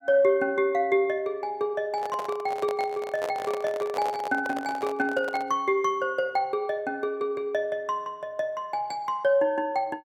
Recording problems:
microphone handling noise; from 2 to 5.5 s; peak -2 dB vs average level

